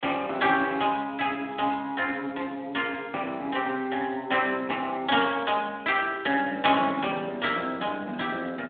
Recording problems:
phone line; 220 Hz to 3.6 kHz, Speex

